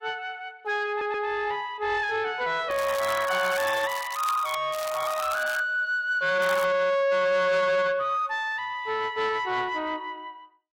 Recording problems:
codec artefacts; AAC, log-spectral distance 3 dB
distortion; soft clipping, signal-to-distortion ratio 11 dB
stutter; at 1 s
crackling; from 2.5 to 4.5 s, at 4.5 s and at 6.5 s; loose cable, SNR 13 dB

